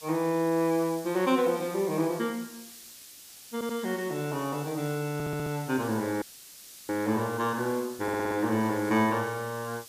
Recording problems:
background hiss; SNR 16 dB
audio stuttering; at 3.5 s, at 5 s and at 8 s
audio cutting out; at 6 s for 0.5 s

